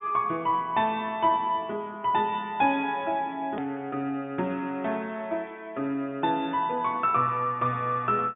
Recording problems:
treble cut off; nothing above 3.6 kHz
edit click; at 3.5 s

